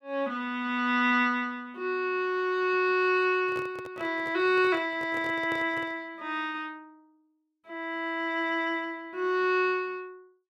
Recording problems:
microphone handling noise; from 3.5 to 6 s; peak -9 dB vs average level

